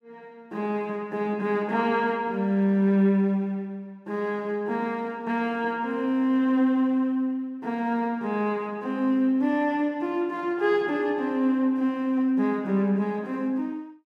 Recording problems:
none

